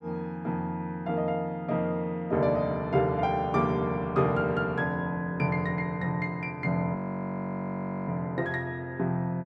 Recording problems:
audio freezing; at 7 s for 1 s

